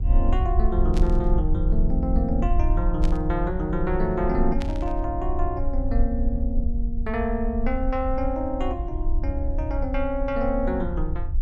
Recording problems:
low-frequency rumble; below 56 Hz, SNR 0 dB
burst of static; at 1 s, at 3 s and at 4.5 s; peak -5 dB vs average level

